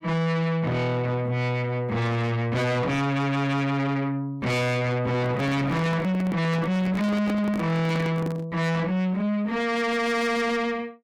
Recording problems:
distorted audio; soft clipping, signal-to-distortion ratio 7 dB
microphone handling noise; from 5 to 8.5 s; peak 0 dB vs average level

